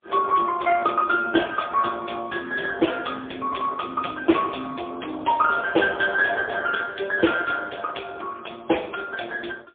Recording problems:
phone line; 260 Hz to 2.9 kHz, AMR-NB, then MP3

